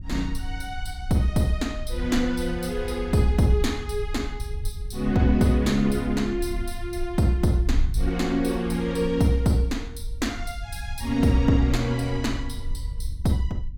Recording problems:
wind on the microphone; below 64 Hz, SNR 9 dB

